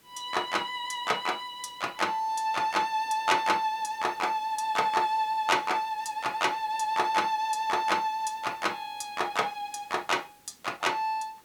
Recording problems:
hiss; SNR 28 dB

